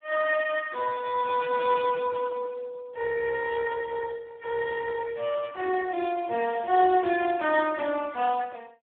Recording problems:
phone line; 260 Hz to 2.3 kHz, Speex

